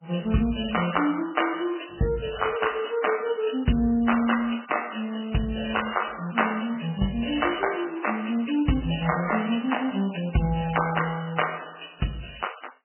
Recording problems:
codec artefacts; MP3, log-spectral distance 9 dB, nothing above 3 kHz

